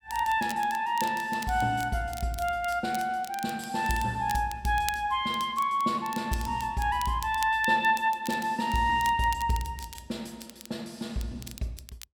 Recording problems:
crackling; vinyl, SNR 16 dB

